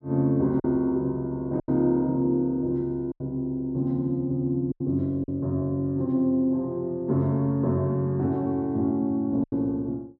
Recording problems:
packet loss; 4% of the sound replaced, filled with silence

